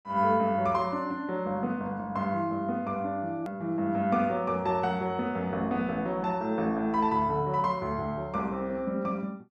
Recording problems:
edit click; at 3.5 s

